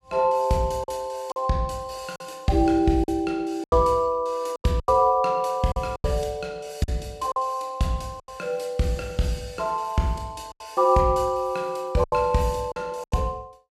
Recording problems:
packet loss; 7% of the sound replaced, filled with silence

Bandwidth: 15.5 kHz